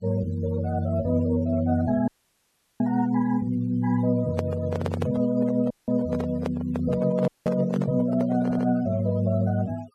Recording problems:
denoising artefacts; signal-to-artefact ratio 23 dB
audio cutting out; at 2 s for 0.5 s, at 5.5 s and at 7.5 s
handling noise; from 4 to 9 s; peak -1 dB vs average level
stutter; at 8.5 s

